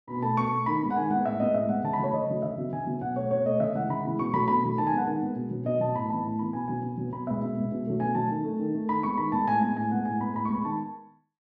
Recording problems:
none

